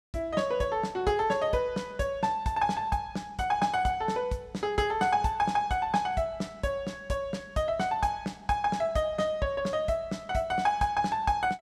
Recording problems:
none

